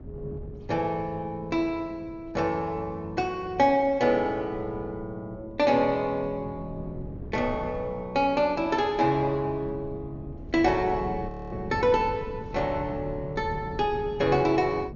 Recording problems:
treble cut off; nothing above 6.9 kHz
wind on the microphone; below 220 Hz, SNR 15 dB
audio freezing; at 11 s

